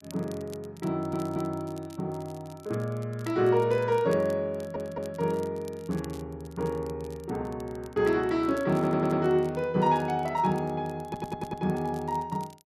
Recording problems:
crackling; vinyl, SNR 25 dB
audio stuttering; 4 times, first at 1 s

